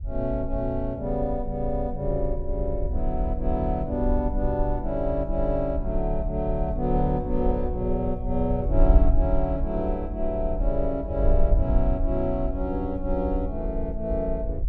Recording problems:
wind on the microphone; below 56 Hz, SNR 2 dB

